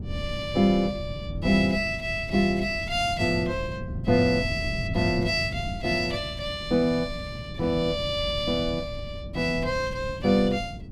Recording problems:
wind noise; below 180 Hz, SNR 10 dB

